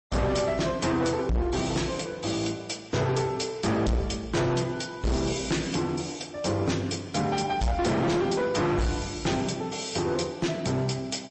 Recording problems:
codec artefacts; MP3, log-spectral distance 5 dB, nothing above 8 kHz
distortion; hard clipping, uneven, signal-to-distortion ratio 8 dB

